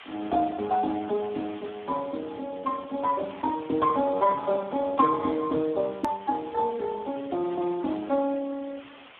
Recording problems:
telephone audio; 240 Hz to 2 kHz, Speex
hiss; SNR 21 dB
click at an edit; at 6 s

